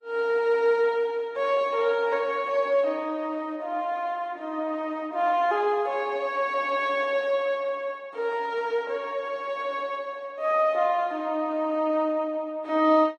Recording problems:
codec artefacts; Vorbis, log-spectral distance 2 dB

